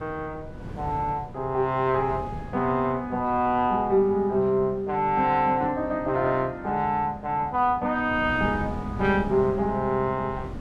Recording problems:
wind on the microphone; below 280 Hz, SNR 14 dB

